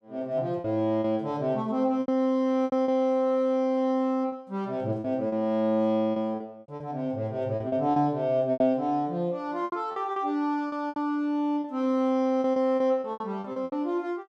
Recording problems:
lost packets; 11% of the sound replaced, filled with repeated pitch periods

